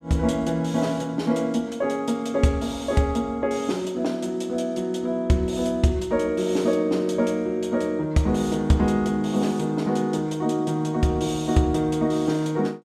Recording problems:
none

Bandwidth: 14.5 kHz